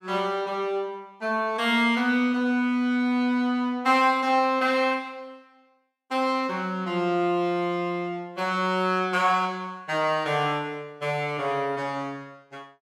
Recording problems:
none

